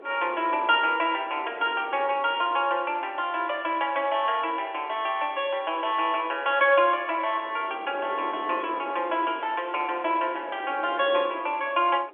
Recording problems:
telephone audio; 280 Hz to 3.4 kHz, G.711
wind noise; below 650 Hz, SNR 17 dB

